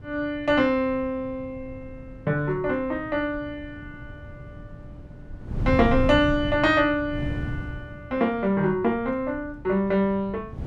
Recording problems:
wind on the microphone; below 150 Hz, SNR 12 dB

